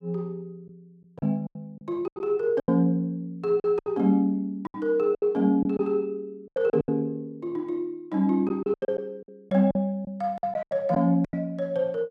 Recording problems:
lost packets; 11% of the sound replaced, filled with silence

